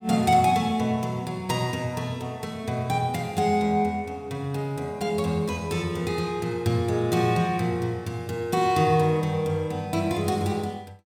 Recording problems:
none

